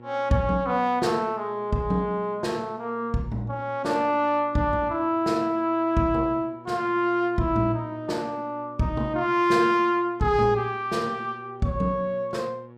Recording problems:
electrical hum; 60 Hz, harmonics up to 1.4 kHz, SNR 23 dB

